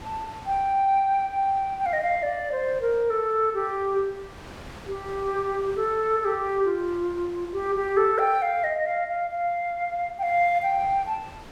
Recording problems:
wind noise; below 1.7 kHz, SNR 21 dB

